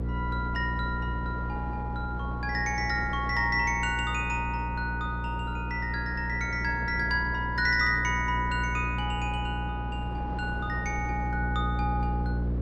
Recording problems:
mains hum; 60 Hz, harmonics up to 540 Hz, SNR 4 dB
wind noise; below 560 Hz, SNR 13 dB

